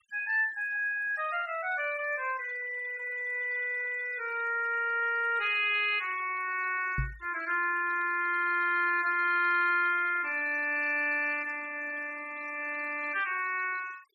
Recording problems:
denoising artefacts; signal-to-artefact ratio 22 dB
microphone bump; at 7 s; peak 0 dB vs average level

